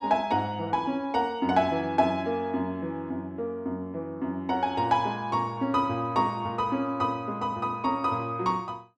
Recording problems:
none

